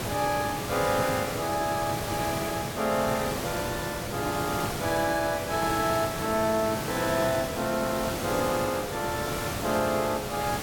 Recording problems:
background hiss; slope -4 dB per octave, SNR 4 dB

